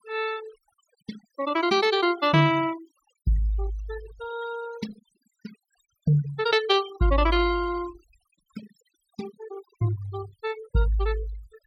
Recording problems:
noise reduction artefacts; signal-to-artefact ratio 17 dB

